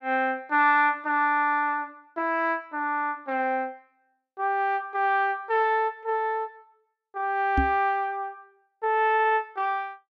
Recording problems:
knock on the microphone; at 7.5 s; peak +3 dB vs average level
audio stuttering; at 9 s

